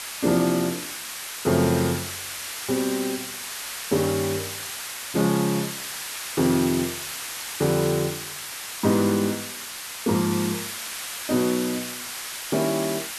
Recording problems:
hiss; slope +2 dB per octave, SNR 6 dB

